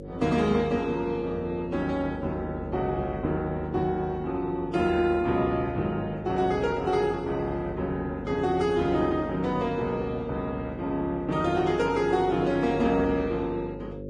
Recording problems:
lossy codec; Vorbis, log-spectral distance 2 dB
hum; 50 Hz, harmonics up to 550 Hz, SNR 11 dB

